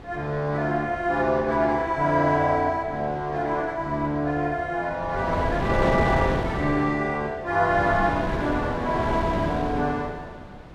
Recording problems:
wind noise; below 580 Hz, SNR 5 dB

